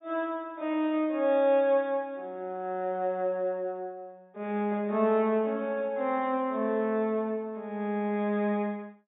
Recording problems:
treble cut off; nothing above 4 kHz

